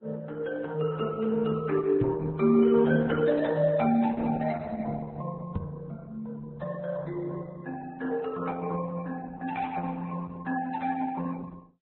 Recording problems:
lossy compression; Opus, then Vorbis, log-spectral distance 3 dB, nothing above 4 kHz
knock on the microphone; at 2 s and at 5.5 s; peak +4 dB vs average level

